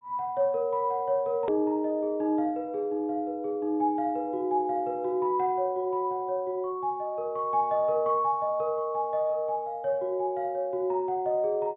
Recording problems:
treble missing; nothing above 4 kHz
click at an edit; at 1.5 s

